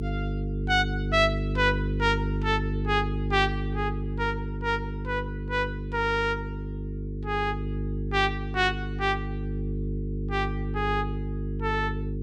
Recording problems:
hum; 50 Hz, harmonics up to 450 Hz, SNR 3 dB

